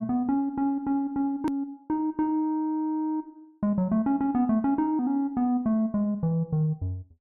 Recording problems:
click at an edit; at 1.5 s

